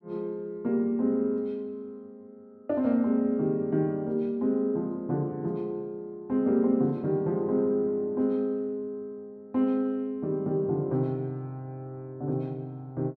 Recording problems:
none

